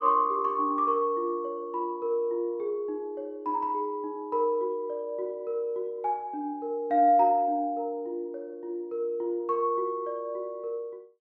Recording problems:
none

